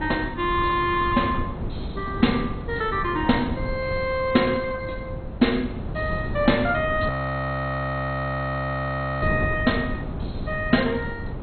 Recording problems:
codec artefacts; MP2, log-spectral distance 3 dB, nothing above 4.2 kHz
wind on the microphone; below 260 Hz, SNR 7 dB
frozen audio; at 7 s for 2 s

